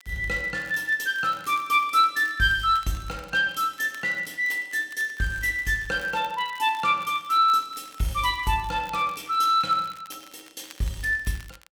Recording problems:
crackle; vinyl, SNR 25 dB

